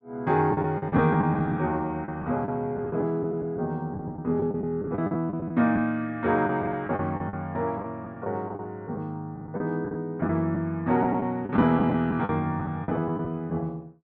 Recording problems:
lost packets; 11% of the sound replaced, filled with the last packet

